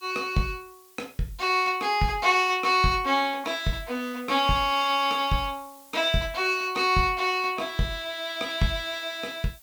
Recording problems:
hiss; slope +1 dB per octave, SNR 26 dB

